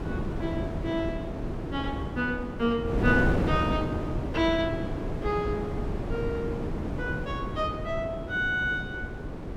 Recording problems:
wind on the microphone; below 380 Hz, SNR 2 dB

